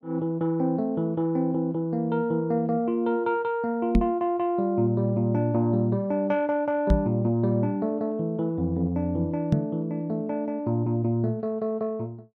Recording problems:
microphone thump; at 4 s, at 7 s and at 9.5 s; peak +7 dB vs average level

